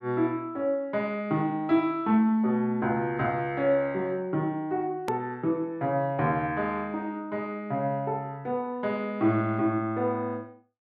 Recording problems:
click at an edit; at 5 s

